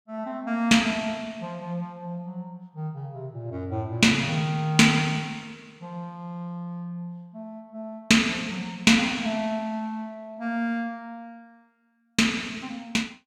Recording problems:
none

